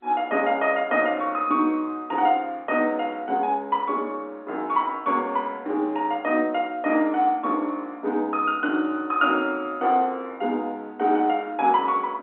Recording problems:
telephone audio; 220 Hz to 3.6 kHz, G.711

